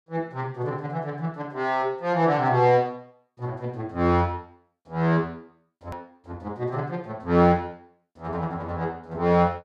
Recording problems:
hard cut with a click; at 6 s

